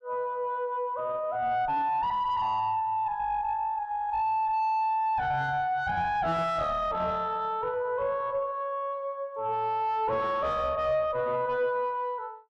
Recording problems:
distorted audio; soft clipping, signal-to-distortion ratio 7 dB

